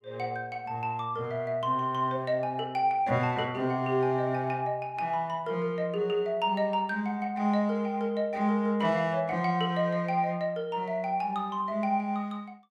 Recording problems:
none

